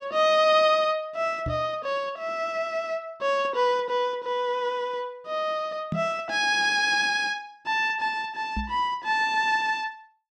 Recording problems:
microphone thump; at 1.5 s, at 6 s and at 8.5 s; peak -2 dB vs average level

